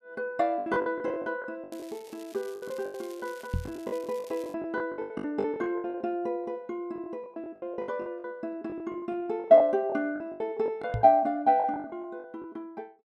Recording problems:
packet loss; 17% of the sound replaced, filled with the last packet
crackling; from 1.5 to 4.5 s; loose cable, SNR 24 dB
microphone thump; at 3.5 s and at 11 s; peak +1 dB vs average level

